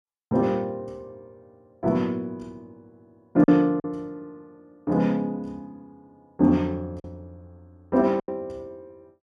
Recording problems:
packet loss; 3% of the sound replaced, filled with silence

